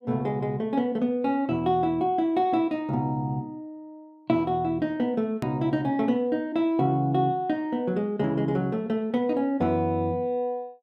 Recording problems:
click at an edit; at 5.5 s

